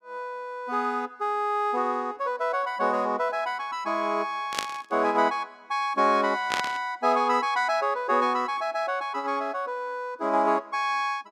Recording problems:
burst of static; at 4.5 s and at 6.5 s; peak +3 dB vs average level

